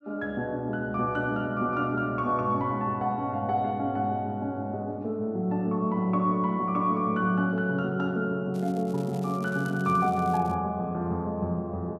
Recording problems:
crackling; from 8.5 to 11 s; loose cable, SNR 24 dB

